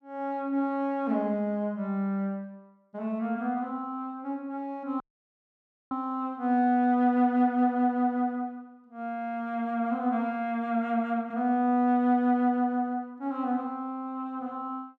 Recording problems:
dropout; at 5 s for 1 s

